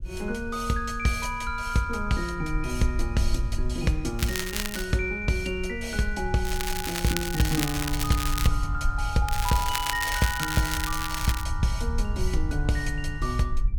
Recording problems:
low-frequency rumble; below 62 Hz, SNR 6 dB
crackling; at 4 s, from 6.5 to 8.5 s and from 9.5 to 11 s; loose cable, SNR 3 dB

